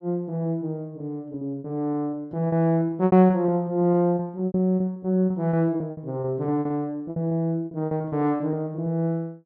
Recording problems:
lost packets; 16% of the sound replaced, filled with repeated pitch periods

